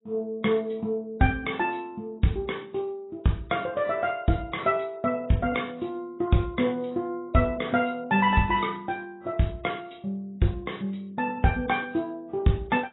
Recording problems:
lossy compression; AAC, log-spectral distance 3 dB, nothing above 3.7 kHz

